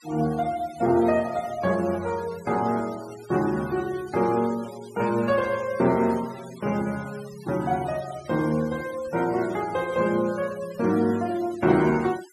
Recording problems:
noise reduction artefacts; signal-to-artefact ratio 19 dB

